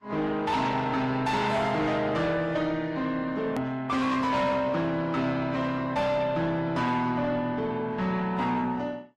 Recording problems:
lossy codec; Opus, then Vorbis, log-spectral distance 3 dB, nothing above 13.1 kHz
distortion; soft clipping, signal-to-distortion ratio 11 dB
hard cut with a click; at 3.5 s

